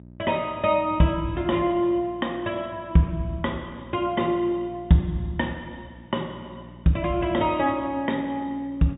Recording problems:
low-pass filter; nothing above 3.8 kHz
electrical hum; 60 Hz, harmonics up to 660 Hz, SNR 22 dB

